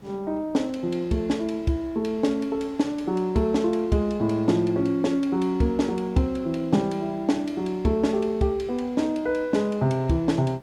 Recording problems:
background hiss; slope -7 dB per octave, SNR 25 dB

